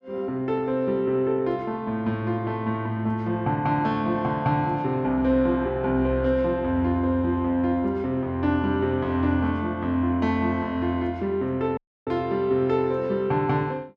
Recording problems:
dropout; at 12 s

